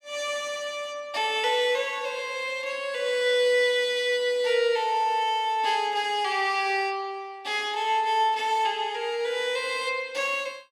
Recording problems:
none

